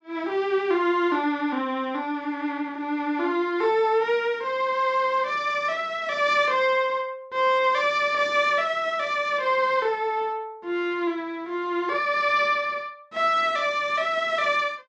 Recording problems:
none

